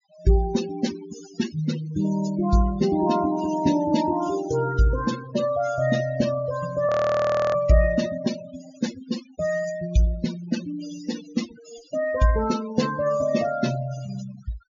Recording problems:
low-pass filter; nothing above 7.1 kHz
denoising artefacts; signal-to-artefact ratio 13 dB
frozen audio; at 7 s for 0.5 s

